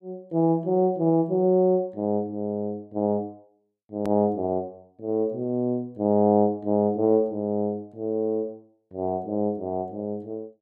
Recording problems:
hard cut with a click; at 4 s

